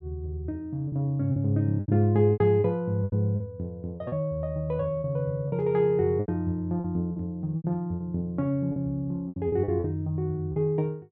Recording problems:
packet loss; 10% of the sound replaced, filled with repeated pitch periods

